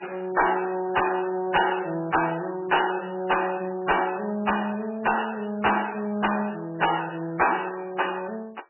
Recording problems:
lossy compression; MP3, log-spectral distance 7 dB, nothing above 2.9 kHz
distorted audio; hard clipping, uneven, signal-to-distortion ratio 11 dB

